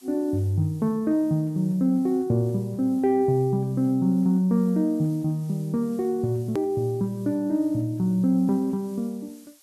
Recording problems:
hiss; slope +1 dB per octave, SNR 29 dB
click at an edit; at 6.5 s

